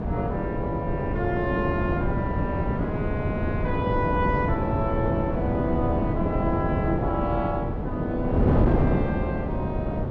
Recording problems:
wind on the microphone; below 360 Hz, SNR -3 dB

